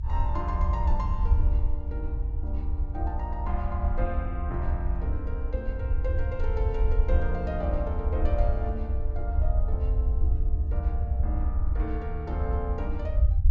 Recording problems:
treble missing; nothing above 8 kHz
low-frequency rumble; below 74 Hz, SNR -7 dB

